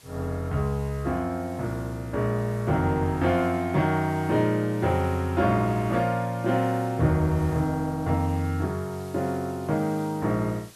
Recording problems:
background hiss; slope -1 dB per octave, SNR 24 dB

